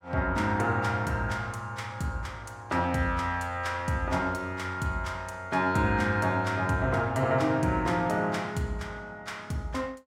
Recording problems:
none

